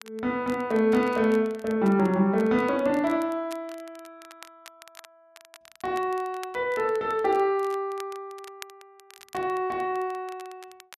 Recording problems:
crackling; vinyl, SNR 24 dB

